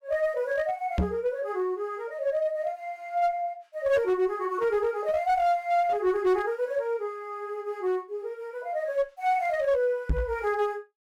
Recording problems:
distortion; hard clipping, uneven, signal-to-distortion ratio 11 dB
knock on the microphone; at 1 s and at 10 s; peak +5 dB vs average level

